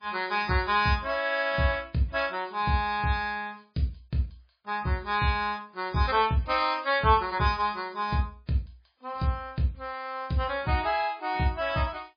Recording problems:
codec artefacts; MP3, log-spectral distance 5 dB, nothing above 5 kHz

